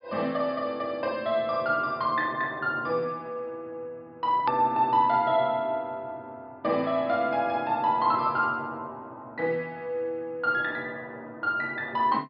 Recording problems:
treble cut off; nothing above 5.5 kHz
hard cut with a click; at 4.5 s

